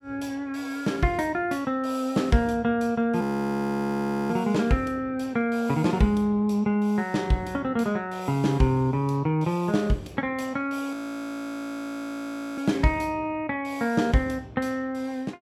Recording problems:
frozen audio; at 3 s for 1 s and at 11 s for 1.5 s

